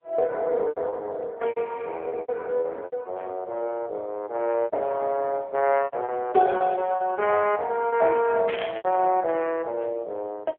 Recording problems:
phone line; 340 Hz to 3.4 kHz, AMR-NB
lost packets; 8% of the sound replaced, filled with repeated pitch periods
static burst; at 8.5 s; peak -4 dB vs average level

